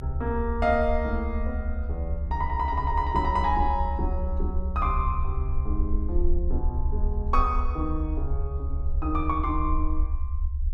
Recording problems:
rumble; below 68 Hz, SNR 1 dB

